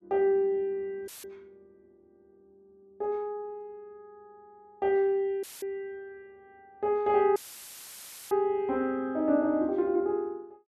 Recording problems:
dropout; at 1 s, at 5.5 s and at 7.5 s for 1 s; filled with static

